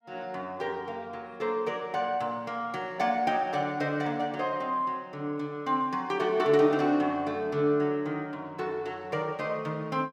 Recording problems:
none

